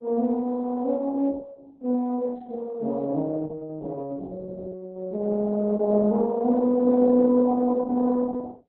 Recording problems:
lossy compression; Opus, log-spectral distance 3 dB

